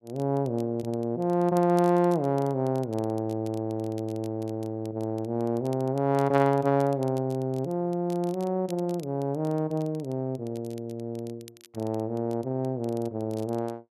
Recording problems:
crackle; vinyl, SNR 26 dB

